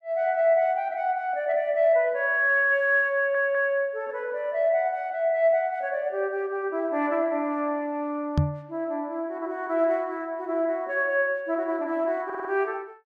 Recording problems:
stutter; at 3 s and at 12 s
knock on the microphone; at 8.5 s; peak +6 dB vs average level

